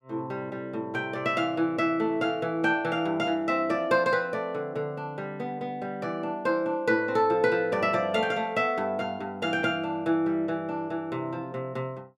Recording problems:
none

